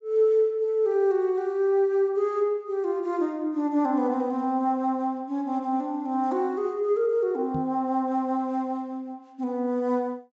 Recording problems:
low-pass filter; nothing above 7.7 kHz
microphone bump; at 7.5 s; peak -4 dB vs average level

